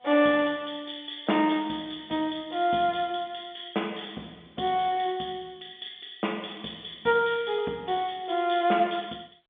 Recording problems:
telephone audio; 220 Hz to 3.5 kHz, G.711

